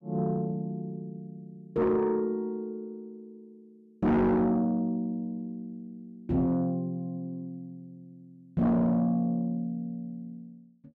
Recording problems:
distortion; soft clipping, signal-to-distortion ratio 7 dB

